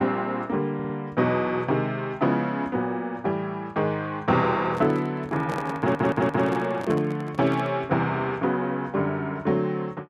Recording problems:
audio stuttering; at 1 s and at 6 s
microphone handling noise; from 4.5 to 7.5 s; peak -4 dB vs average level

